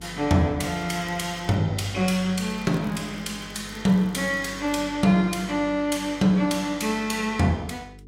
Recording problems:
hum; 50 Hz, harmonics up to 450 Hz, SNR 21 dB
crackling; at 0.5 s and from 2.5 to 5 s; loose cable, SNR 29 dB

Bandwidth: 16 kHz